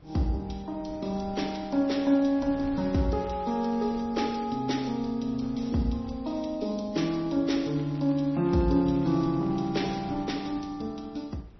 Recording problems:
lossy codec; MP3, log-spectral distance 4 dB, nothing above 5.8 kHz
wind on the microphone; below 340 Hz, SNR 21 dB
crackling; from 1.5 to 4 s and from 7.5 to 10 s; loose cable, SNR 26 dB

